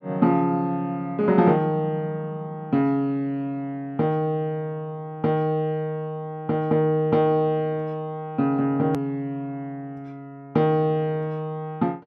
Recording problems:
hard cut with a click; at 9 s

